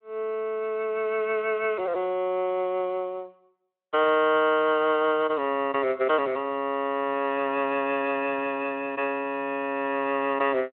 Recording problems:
telephone audio; 240 Hz to 3.4 kHz, Speex

